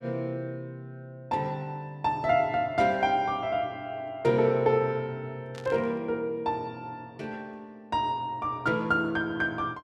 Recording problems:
burst of static; at 5.5 s; peak -13 dB vs average level

